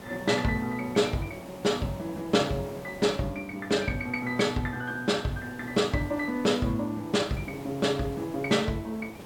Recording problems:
background hiss; slope -7 dB per octave, SNR 16 dB

